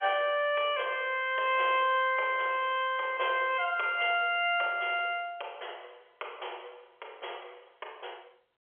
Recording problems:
phone line; 370 Hz to 3.3 kHz, G.711

